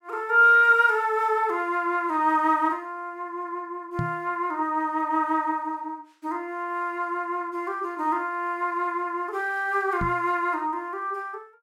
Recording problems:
microphone bump; at 4 s and at 10 s; peak -2 dB vs average level

